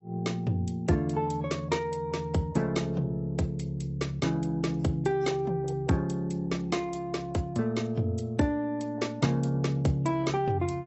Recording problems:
lossy codec; AAC, log-spectral distance 2 dB, nothing above 7.8 kHz

